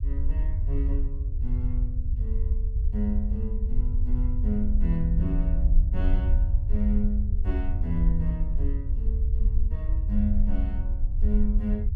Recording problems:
low-frequency rumble; below 64 Hz, SNR -6 dB

